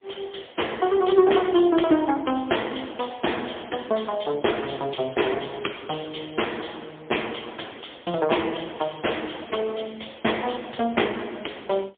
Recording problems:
telephone audio; 260 Hz to 3.5 kHz, AMR-NB, then MP3

